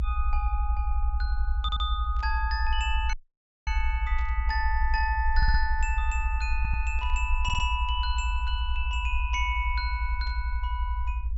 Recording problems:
treble cut off; nothing above 8 kHz
low-frequency rumble; below 64 Hz, SNR -2 dB
stutter; 4 times, first at 1.5 s
static burst; 4 times, first at 2 s; peak -14 dB vs average level
audio cutting out; at 3 s for 0.5 s

